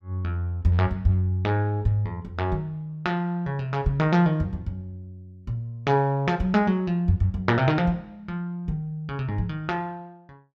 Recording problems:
none

